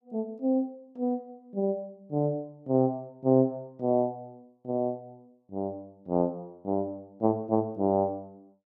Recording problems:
none

